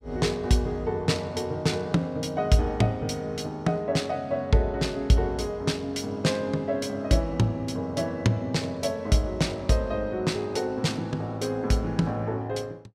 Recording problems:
none

